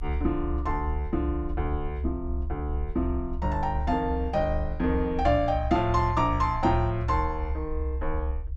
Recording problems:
low-frequency rumble; below 70 Hz, strongest tone 68 Hz, SNR 5 dB

